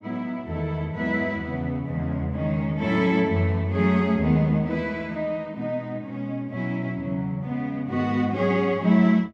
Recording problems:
none

